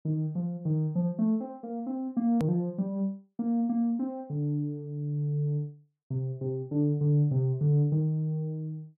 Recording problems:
edit click; at 2.5 s

